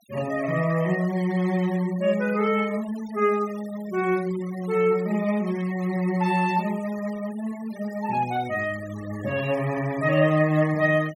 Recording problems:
denoising artefacts; signal-to-artefact ratio 20 dB

